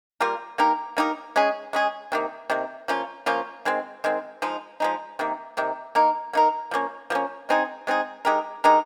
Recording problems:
none

